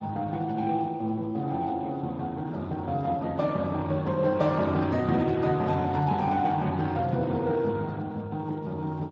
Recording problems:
lossy compression; Speex, log-spectral distance 3 dB

